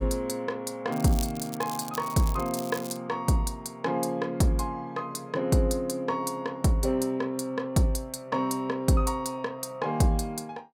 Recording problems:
crackling; from 1 to 3 s; loose cable, SNR 13 dB

